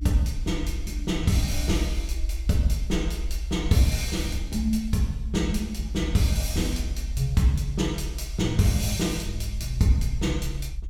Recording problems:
low-frequency rumble; below 62 Hz, SNR 7 dB

